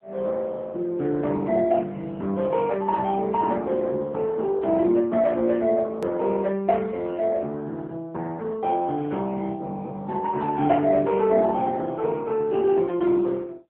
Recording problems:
phone line; 190 Hz to 3.6 kHz, AMR-NB
edit click; at 6 s

